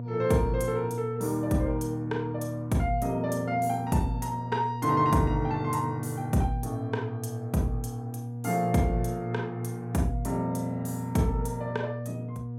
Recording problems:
electrical hum; 60 Hz, harmonics up to 720 Hz, SNR 7 dB

